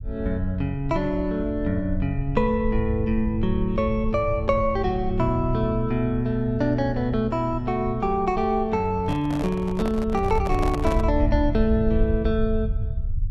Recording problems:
low-frequency rumble; below 80 Hz, SNR 7 dB
microphone handling noise; from 9 to 11 s; peak -3 dB vs average level

